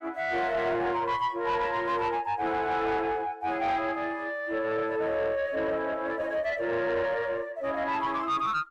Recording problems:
distorted audio; soft clipping, signal-to-distortion ratio 10 dB

